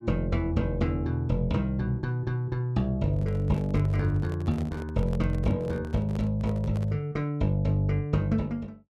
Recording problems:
handling noise; from 3 to 7 s; peak -9 dB vs average level

